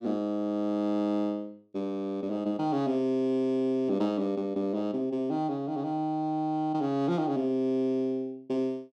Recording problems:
none

